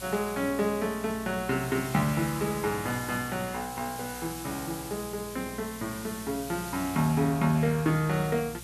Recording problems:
hum; 60 Hz, harmonics up to 600 Hz, SNR 19 dB
background hiss; slope +1 dB per octave, SNR 12 dB

